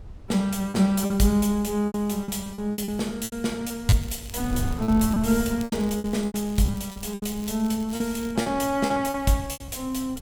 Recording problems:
wind noise; below 130 Hz, SNR 14 dB
packet loss; 12% of the sound replaced, filled with repeated pitch periods
crackling; from 4 to 5 s and from 5.5 to 8.5 s; loose cable, SNR 22 dB

